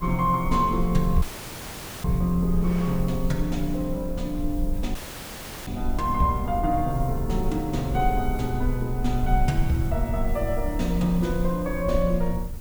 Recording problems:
hiss; SNR 20 dB
rumble; below 52 Hz, strongest tone 20 Hz, SNR 7 dB
wind noise; below 1.6 kHz, SNR 24 dB
dropout; at 1 s for 1 s and at 5 s for 0.5 s

